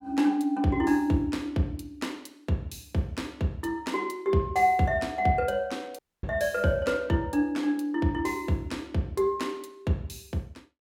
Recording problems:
audio cutting out; at 6 s

